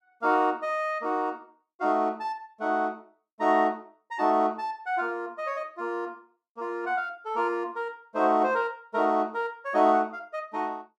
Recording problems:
none

